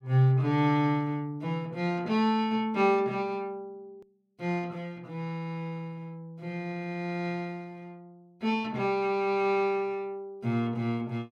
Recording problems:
click at an edit; at 4 s

